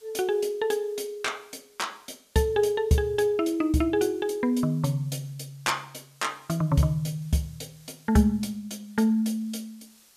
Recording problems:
hiss; slope +1 dB per octave, SNR 30 dB

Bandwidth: 14.5 kHz